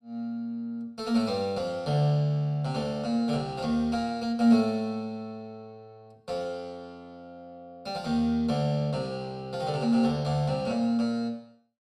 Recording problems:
none

